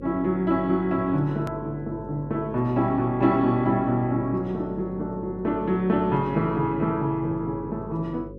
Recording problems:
electrical hum; 50 Hz, harmonics up to 550 Hz, SNR 16 dB
edit click; at 1.5 s

